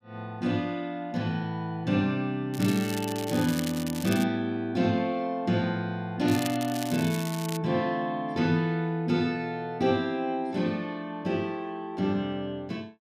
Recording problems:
crackle; from 2.5 to 4 s and from 6.5 to 7.5 s; loose cable, SNR 10 dB

